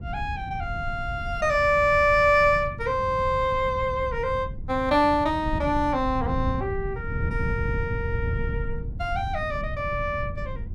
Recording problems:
wind noise; below 120 Hz, SNR 8 dB

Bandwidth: 17 kHz